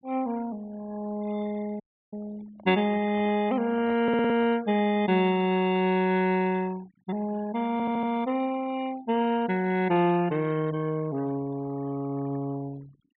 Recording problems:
low-pass filter; nothing above 4 kHz
denoising artefacts; signal-to-artefact ratio 21 dB
audio cutting out; at 2 s
microphone handling noise; from 2.5 to 4.5 s; peak -13 dB vs average level
stutter; at 4 s and at 7.5 s

